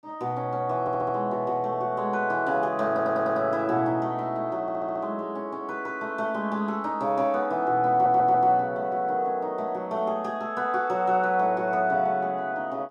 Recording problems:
stutter; 4 times, first at 1 s

